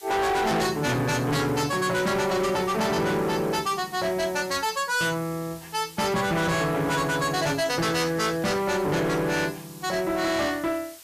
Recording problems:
distorted audio; hard clipping, signal-to-distortion ratio 7 dB
hiss; slope +2 dB per octave, SNR 20 dB

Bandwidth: 14.5 kHz